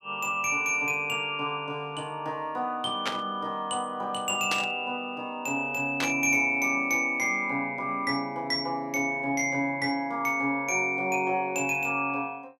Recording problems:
burst of static; at 3 s, at 4.5 s and at 6 s; peak +2 dB vs average level

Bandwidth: 15.5 kHz